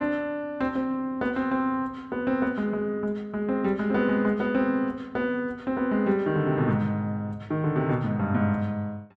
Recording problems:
none

